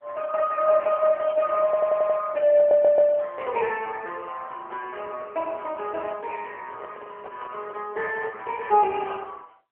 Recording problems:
phone line; 340 Hz to 2.3 kHz, AMR-NB
audio stuttering; at 1.5 s and at 2.5 s
handling noise; from 6 to 8.5 s; peak -10 dB vs average level

